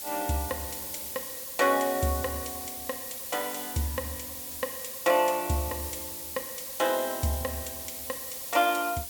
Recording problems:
hiss; SNR 5 dB

